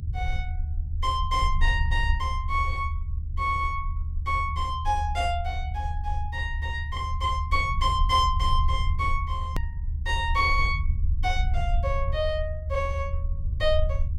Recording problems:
low-frequency rumble; below 76 Hz, SNR 2 dB
hard cut with a click; at 9.5 s

